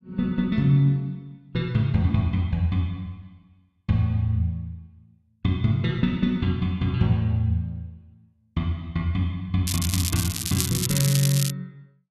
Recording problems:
crackling; from 9.5 to 12 s; loose cable, SNR 3 dB

